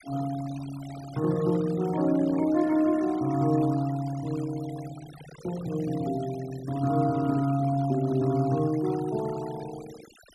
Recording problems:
denoising artefacts; signal-to-artefact ratio 19 dB

